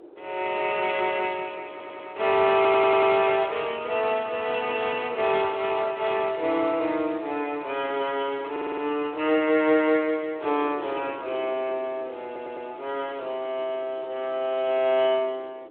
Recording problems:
phone line; 300 Hz to 3.5 kHz, Speex
wind noise; below 500 Hz, SNR 20 dB
stutter; 4 times, first at 1.5 s

